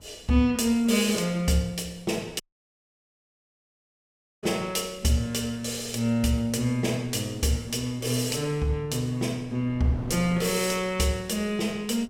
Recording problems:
wind noise; below 370 Hz, SNR 22 dB
audio cutting out; at 2.5 s for 2 s

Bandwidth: 16.5 kHz